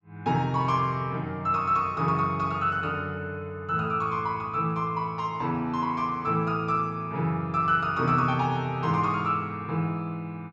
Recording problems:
treble missing; nothing above 8 kHz

